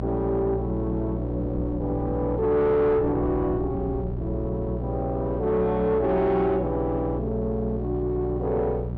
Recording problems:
distortion; soft clipping, signal-to-distortion ratio 10 dB
hum; 60 Hz, harmonics up to 780 Hz, SNR 6 dB
wind on the microphone; below 270 Hz, SNR 14 dB

